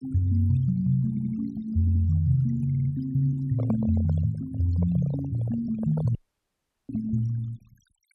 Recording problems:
denoising artefacts; signal-to-artefact ratio 21 dB
stutter; at 1 s, at 2 s and at 2.5 s
handling noise; from 3.5 to 6 s; peak -7 dB vs average level
audio cutting out; at 6 s for 0.5 s

